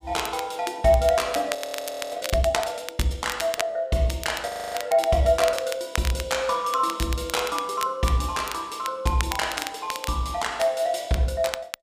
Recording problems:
crackle; vinyl, SNR 10 dB
audio freezing; at 1.5 s for 0.5 s and at 4.5 s

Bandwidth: 15 kHz